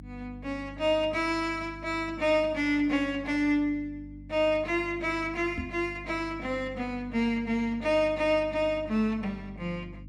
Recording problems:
electrical hum; 50 Hz, harmonics up to 300 Hz, SNR 17 dB
knock on the microphone; at 5.5 s; peak -2 dB vs average level

